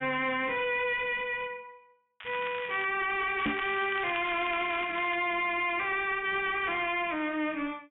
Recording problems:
low-pass filter; nothing above 3.5 kHz
distortion; hard clipping, uneven, signal-to-distortion ratio 8 dB
crackle; at 2 s and from 3.5 to 5 s; loose cable, SNR 12 dB
microphone bump; at 3.5 s; peak +3 dB vs average level

